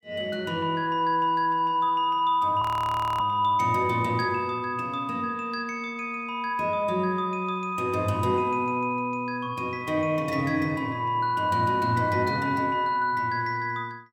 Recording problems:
frozen audio; at 2.5 s for 0.5 s

